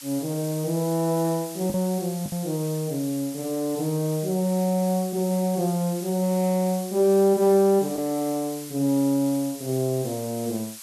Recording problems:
background hiss; SNR 14 dB
lost packets; 1.1% of the sound replaced, filled with the last packet

